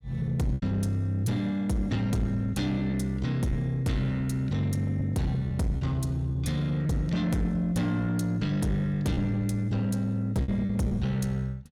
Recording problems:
distorted audio; soft clipping, signal-to-distortion ratio 10 dB
lost packets; 4% of the sound replaced, filled with repeated pitch periods

